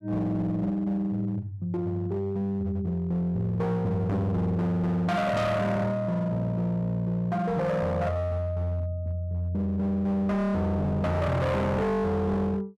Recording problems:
distortion; hard clipping, signal-to-distortion ratio 6 dB

